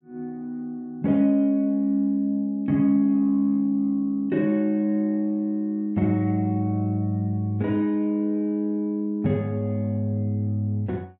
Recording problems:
none

